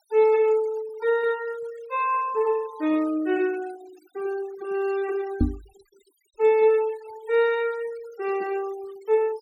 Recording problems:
denoising artefacts; signal-to-artefact ratio 23 dB
knock on the microphone; at 5.5 s; peak +6 dB vs average level

